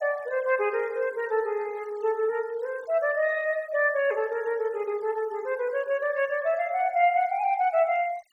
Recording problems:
denoising artefacts; signal-to-artefact ratio 26 dB

